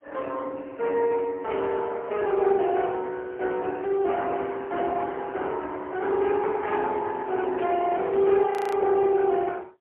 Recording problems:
phone line; 300 Hz to 3.2 kHz, AMR-NB, then MP3
burst of static; at 1.5 s and at 7.5 s; peak -11 dB vs average level
frozen audio; at 8.5 s

